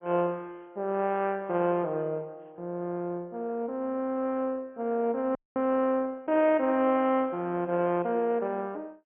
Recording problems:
low-pass filter; nothing above 2.9 kHz
lossy compression; MP2, log-spectral distance 2 dB
frozen audio; at 5.5 s

